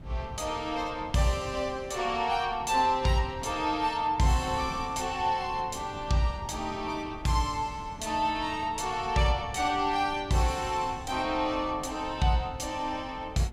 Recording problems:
wind noise; below 250 Hz, SNR 17 dB

